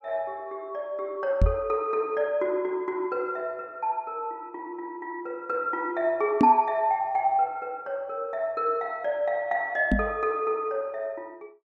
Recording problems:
microphone bump; at 1.5 s, at 6.5 s and at 10 s; peak +9 dB vs average level

